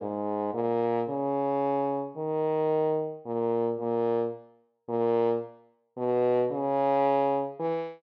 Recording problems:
none

